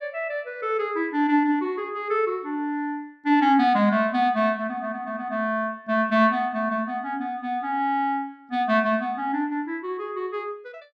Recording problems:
none

